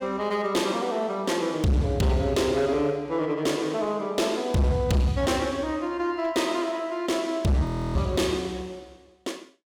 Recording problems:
distorted audio; hard clipping, signal-to-distortion ratio 10 dB
frozen audio; at 7.5 s

